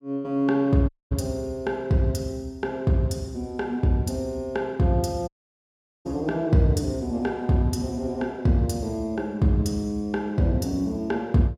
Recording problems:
audio cutting out; at 1 s and at 5.5 s for 1 s

